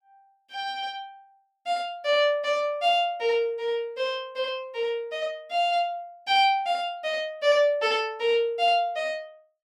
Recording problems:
none

